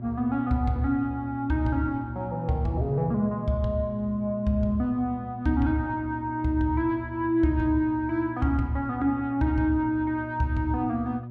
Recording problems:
hum; 60 Hz, harmonics up to 600 Hz, SNR 12 dB

